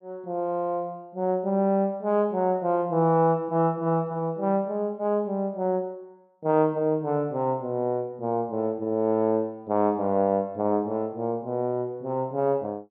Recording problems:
none

